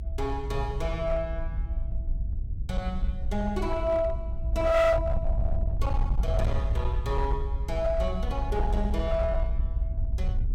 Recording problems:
distortion; hard clipping, signal-to-distortion ratio 11 dB
rumble; below 66 Hz, SNR 1 dB

